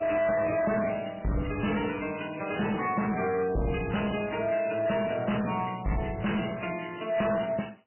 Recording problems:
codec artefacts; MP3, log-spectral distance 11 dB, nothing above 2.9 kHz
distorted audio; hard clipping, signal-to-distortion ratio 6 dB

